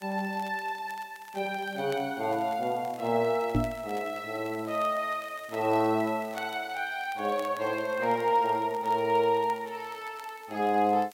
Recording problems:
hiss; slope +2 dB per octave, SNR 27 dB
crackle; vinyl, SNR 25 dB
microphone thump; at 3.5 s; peak +6 dB vs average level

